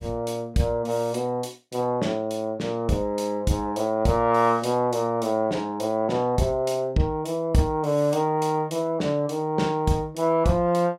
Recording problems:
none

